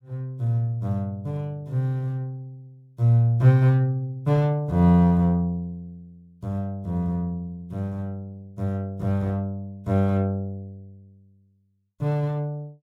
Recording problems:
none

